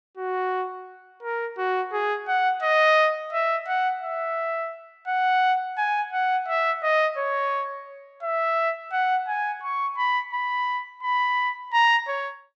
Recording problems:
none

